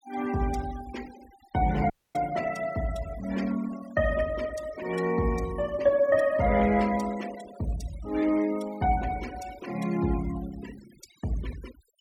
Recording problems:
denoising artefacts; signal-to-artefact ratio 18 dB
dropout; at 2 s

